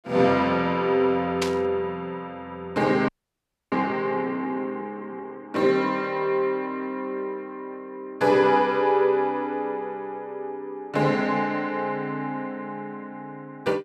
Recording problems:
static burst; at 1.5 s; peak +1 dB vs average level
audio freezing; at 3 s for 0.5 s

